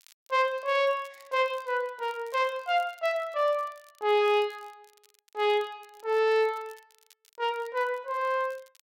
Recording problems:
crackle; vinyl, SNR 30 dB

